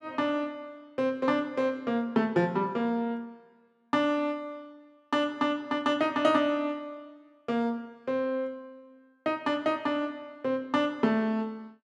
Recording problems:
none

